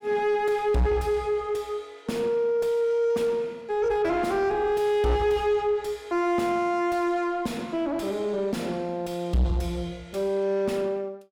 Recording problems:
distortion; soft clipping, signal-to-distortion ratio 7 dB

